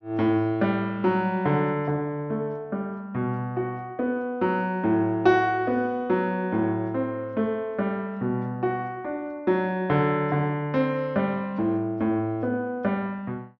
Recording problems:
low-pass filter; nothing above 6.7 kHz

